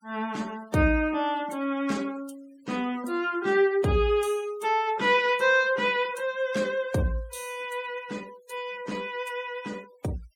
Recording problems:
noise reduction artefacts; signal-to-artefact ratio 23 dB

